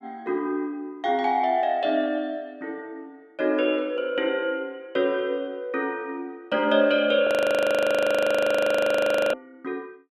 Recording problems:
frozen audio; at 7.5 s for 2 s

